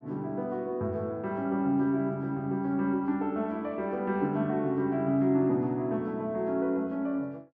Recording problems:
none

